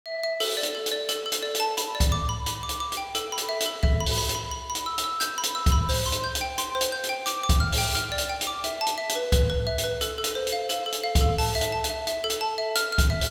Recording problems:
none

